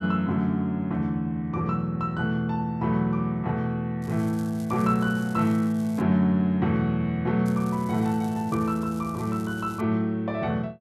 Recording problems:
crackling; from 4 to 6 s and from 7.5 to 10 s; loose cable, SNR 24 dB

